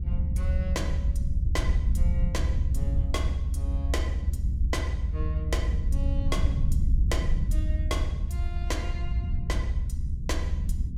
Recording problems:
rumble; below 76 Hz, SNR -9 dB

